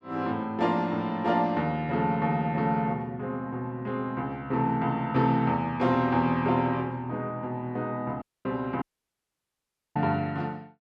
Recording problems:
dropout; at 8 s and at 9 s for 1 s

